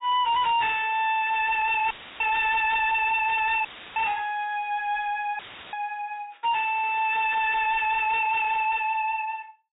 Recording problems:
treble cut off; nothing above 4 kHz
distorted audio; soft clipping, signal-to-distortion ratio 7 dB
audio cutting out; at 2 s, at 3.5 s and at 5.5 s; filled with static

